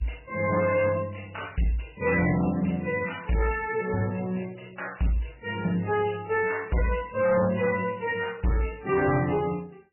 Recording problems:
codec artefacts; AAC, then MP3, log-spectral distance 7 dB, nothing above 2.9 kHz
distorted audio; hard clipping, signal-to-distortion ratio 10 dB

